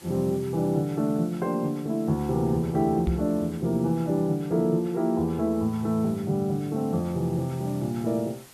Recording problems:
hiss; slope -1 dB per octave, SNR 24 dB
microphone thump; at 3 s; peak +3 dB vs average level

